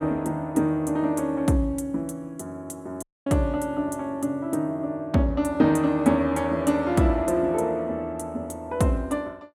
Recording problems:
audio cutting out; at 3 s

